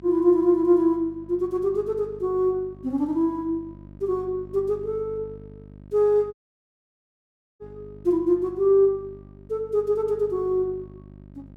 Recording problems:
hum; 50 Hz, harmonics up to 700 Hz, SNR 22 dB
dropout; at 6.5 s for 1.5 s

